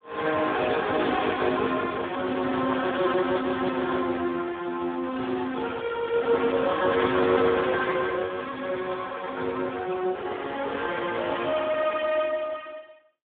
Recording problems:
phone line; 280 Hz to 3.6 kHz, Speex

